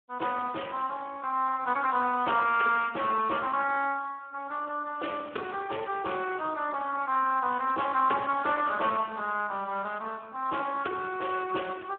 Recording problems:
telephone audio; 260 Hz to 2.8 kHz, Speex

